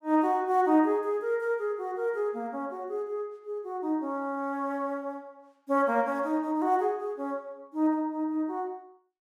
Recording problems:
none

